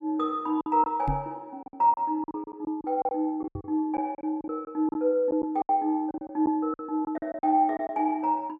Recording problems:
lost packets; 12% of the sound replaced, filled with silence
microphone bump; at 1 s and at 3.5 s; peak +1 dB vs average level

